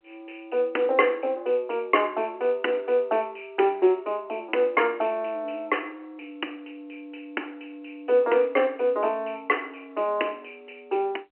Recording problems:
phone line; 260 Hz to 3.1 kHz, G.711

